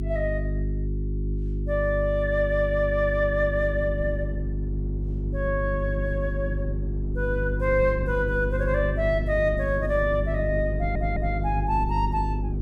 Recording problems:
electrical hum; 50 Hz, harmonics up to 400 Hz, SNR 3 dB
wind on the microphone; below 250 Hz, SNR 14 dB
audio stuttering; at 11 s

